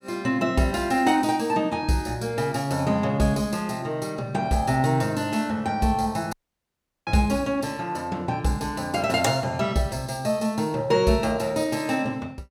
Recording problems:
audio cutting out; at 6.5 s for 0.5 s

